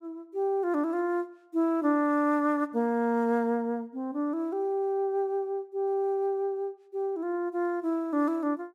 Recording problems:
none

